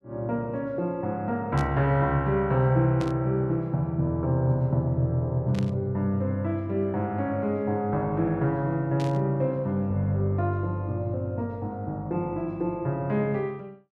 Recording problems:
static burst; 4 times, first at 1.5 s; peak -9 dB vs average level

